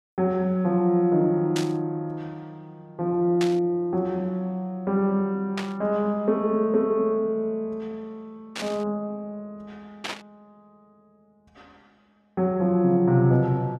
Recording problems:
static burst; 5 times, first at 1.5 s; peak -3 dB vs average level

